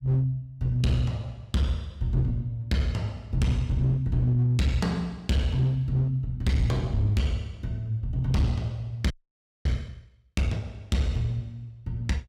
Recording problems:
distortion; hard clipping, uneven, signal-to-distortion ratio 10 dB
audio freezing; at 9 s for 0.5 s

